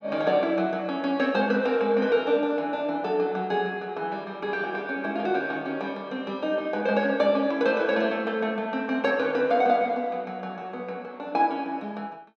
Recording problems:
none

